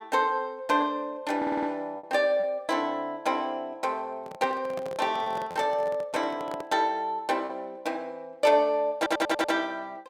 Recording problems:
lost packets; 2% of the sound replaced, filled with repeated pitch periods
audio stuttering; at 1.5 s and at 9 s
handling noise; from 4 to 6.5 s; peak -8 dB vs average level

